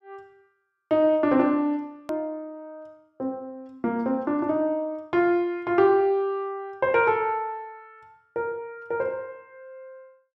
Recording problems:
click at an edit; at 2 s

